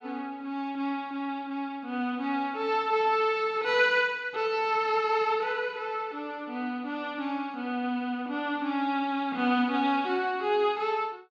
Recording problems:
none

